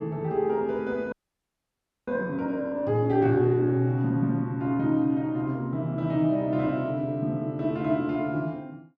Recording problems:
audio freezing; at 1 s for 1 s

